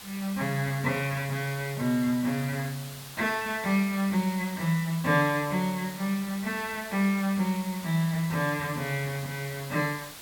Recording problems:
hiss; slope 0 dB per octave, SNR 13 dB

